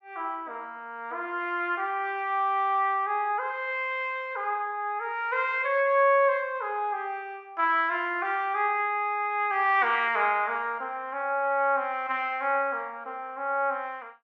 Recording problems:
none

